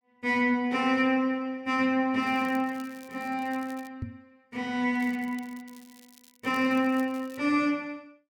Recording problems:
crackling; from 2 to 4 s and from 5 to 7.5 s; loose cable, SNR 26 dB
knock on the microphone; at 4 s; peak -4 dB vs average level

